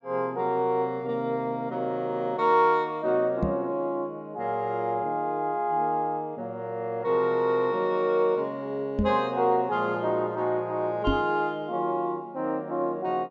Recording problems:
treble missing; nothing above 8 kHz
knock on the microphone; at 3.5 s, at 9 s and at 11 s; peak +4 dB vs average level

